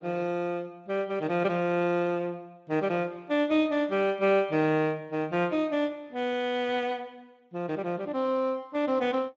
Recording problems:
lossy codec; Speex, log-spectral distance 2 dB, nothing above 7.3 kHz

